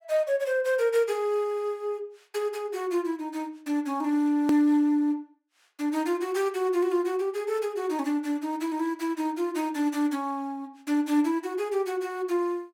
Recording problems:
hard cut with a click; at 4.5 s

